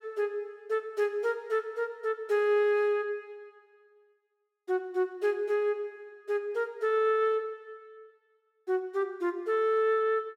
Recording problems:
none

